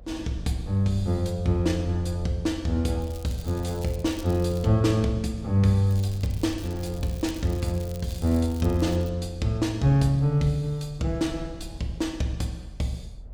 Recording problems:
rumble; below 80 Hz, SNR 17 dB
crackle; from 3 to 4.5 s and from 6 to 9 s; loose cable, SNR 21 dB

